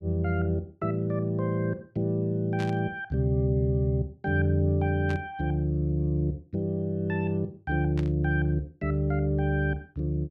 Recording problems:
burst of static; at 2.5 s, at 5 s and at 8 s; peak -10 dB vs average level

